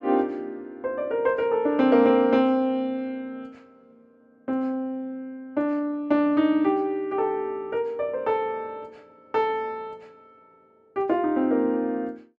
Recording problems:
none

